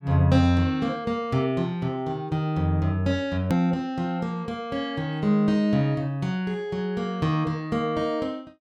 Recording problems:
edit click; at 3.5 s

